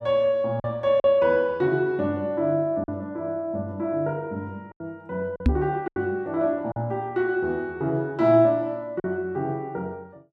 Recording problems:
packet loss; 4% of the sound replaced, filled with silence
microphone thump; at 5.5 s; peak +7 dB vs average level

